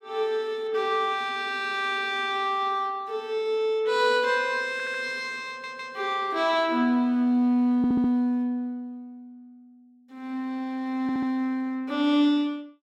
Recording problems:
stutter; 4 times, first at 4.5 s

